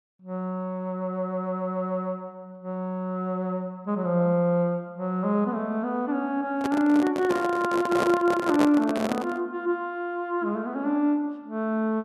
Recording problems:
handling noise; from 6.5 to 9.5 s; peak +3 dB vs average level

